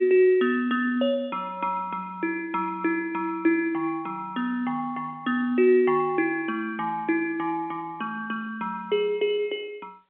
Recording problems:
telephone audio; 220 Hz to 3.7 kHz, G.711

